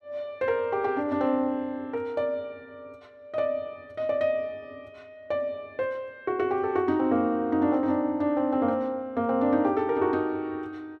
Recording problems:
none

